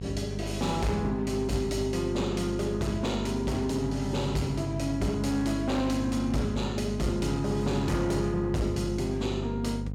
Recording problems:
distorted audio; hard clipping, signal-to-distortion ratio 11 dB
mains hum; 50 Hz, harmonics up to 550 Hz, SNR 6 dB

